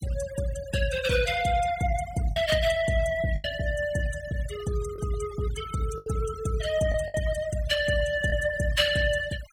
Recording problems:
noise reduction artefacts; signal-to-artefact ratio 14 dB
packet loss; 3% of the sound replaced, filled with the last packet

